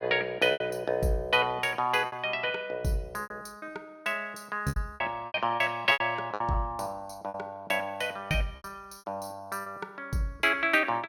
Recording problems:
packet loss; 9% of the sound replaced, filled with repeated pitch periods

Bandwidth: 17 kHz